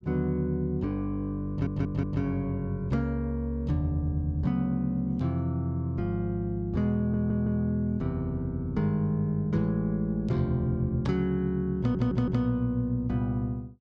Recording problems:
audio stuttering; at 1.5 s, at 7 s and at 12 s

